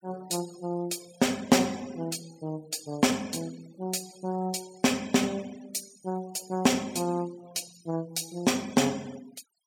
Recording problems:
noise reduction artefacts; signal-to-artefact ratio 20 dB

